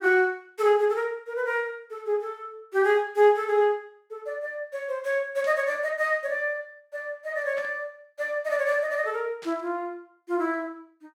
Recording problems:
burst of static; at 5.5 s, at 7.5 s and at 9.5 s; peak -13 dB vs average level

